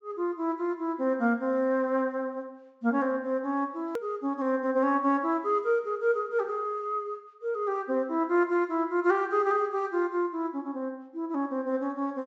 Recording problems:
low-pass filter; nothing above 8 kHz
edit click; at 4 s

